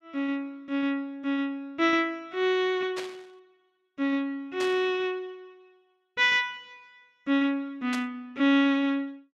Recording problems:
static burst; at 3 s, at 4.5 s and at 8 s; peak -5 dB vs average level

